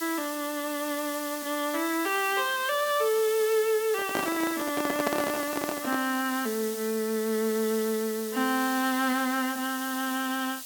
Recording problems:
hiss; SNR 9 dB
microphone handling noise; from 4 to 6 s; peak +3 dB vs average level

